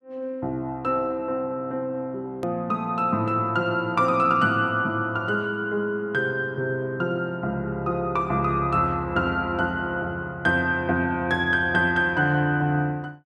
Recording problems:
hard cut with a click; at 2.5 s

